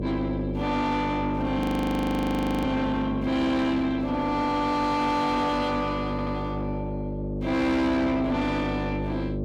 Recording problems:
distortion; soft clipping, signal-to-distortion ratio 7 dB
electrical hum; 50 Hz, harmonics up to 600 Hz, SNR 5 dB
audio freezing; at 1.5 s for 1 s
audio stuttering; at 6 s

